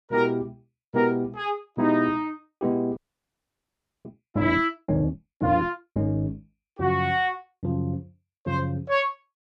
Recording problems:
audio freezing; at 3 s for 1 s

